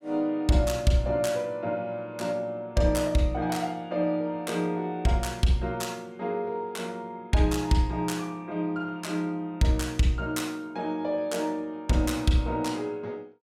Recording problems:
none

